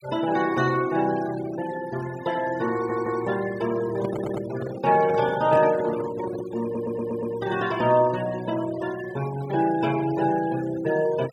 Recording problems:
denoising artefacts; signal-to-artefact ratio 16 dB
audio stuttering; at 2.5 s, at 4 s and at 6.5 s
microphone handling noise; from 4 to 6.5 s; peak -4 dB vs average level

